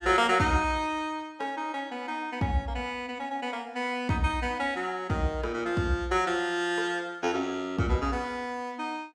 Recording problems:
none

